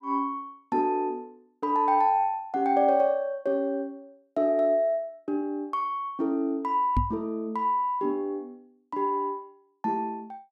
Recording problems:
microphone bump; at 7 s; peak +4 dB vs average level

